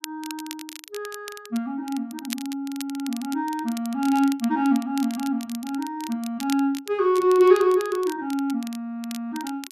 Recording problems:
crackling; vinyl, SNR 16 dB

